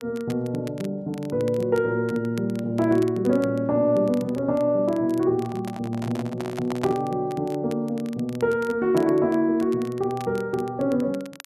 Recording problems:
crackling; vinyl, SNR 24 dB
handling noise; from 5.5 to 7 s; peak -1 dB vs average level

